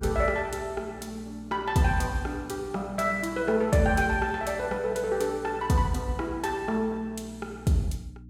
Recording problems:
mains hum; 60 Hz, harmonics up to 300 Hz, SNR 19 dB

